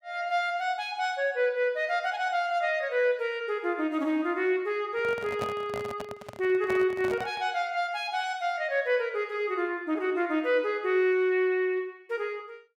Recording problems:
microphone handling noise; from 5 to 7.5 s; peak -3 dB vs average level

